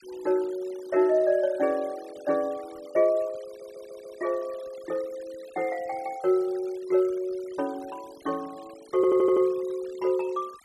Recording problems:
denoising artefacts; signal-to-artefact ratio 24 dB
stutter; at 3.5 s and at 9 s

